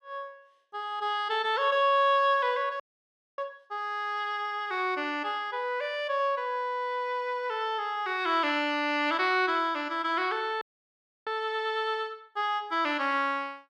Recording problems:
frozen audio; at 3 s for 0.5 s and at 11 s for 0.5 s

